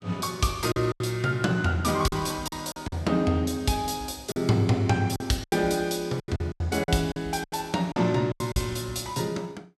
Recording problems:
lost packets; 10% of the sound replaced, filled with silence

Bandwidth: 14.5 kHz